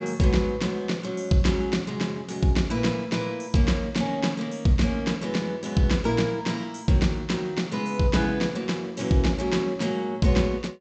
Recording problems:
treble cut off; nothing above 8 kHz

